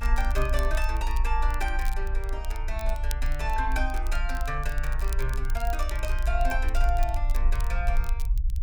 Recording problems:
rumble; below 54 Hz, strongest tone 26 Hz, SNR -3 dB
crackle; vinyl, SNR 14 dB

